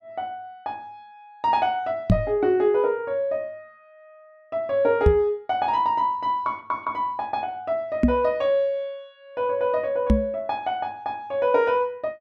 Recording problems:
knock on the microphone; 4 times, first at 2 s; peak +9 dB vs average level

